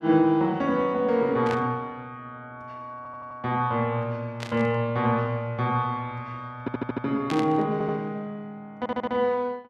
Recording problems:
static burst; at 1.5 s, at 4.5 s and at 7.5 s; peak -4 dB vs average level
stutter; 4 times, first at 3 s

